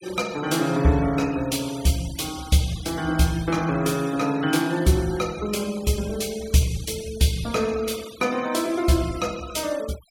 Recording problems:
noise reduction artefacts; signal-to-artefact ratio 18 dB

